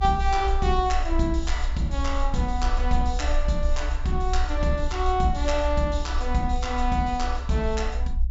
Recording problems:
low-pass filter; nothing above 8 kHz
low-frequency rumble; below 60 Hz, strongest tone 24 Hz, SNR 3 dB

